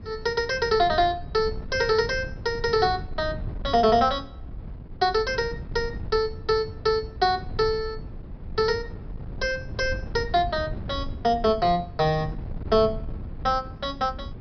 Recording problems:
treble cut off; nothing above 5.5 kHz
wind on the microphone; below 140 Hz, SNR 12 dB

